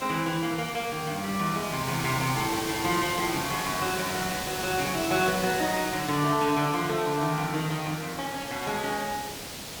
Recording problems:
background hiss; slope -2 dB per octave, SNR 6 dB

